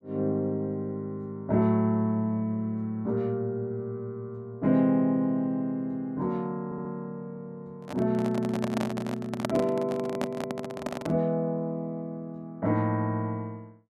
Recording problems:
audio stuttering; at 6.5 s
handling noise; from 8 to 11 s; peak +3 dB vs average level

